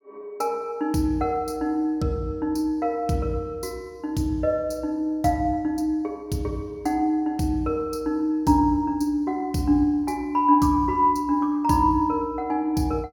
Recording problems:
none

